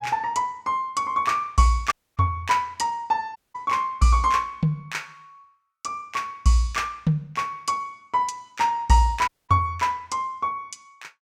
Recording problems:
audio cutting out; at 2 s, at 3.5 s and at 9.5 s

